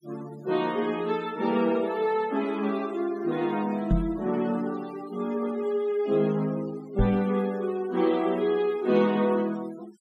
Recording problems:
noise reduction artefacts; signal-to-artefact ratio 22 dB
microphone thump; at 4 s and at 7 s; peak +5 dB vs average level

